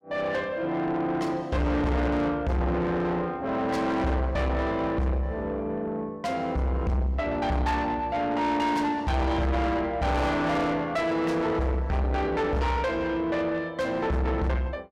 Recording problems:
distorted audio; soft clipping, signal-to-distortion ratio 8 dB

